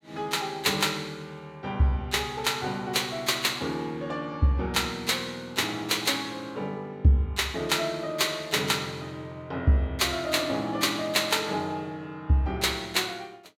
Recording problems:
none

